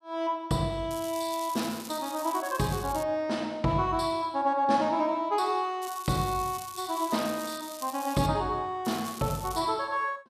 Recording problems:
crackle; from 1 to 3 s, from 6 to 8.5 s and at 9 s; loose cable, SNR 13 dB

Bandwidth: 14.5 kHz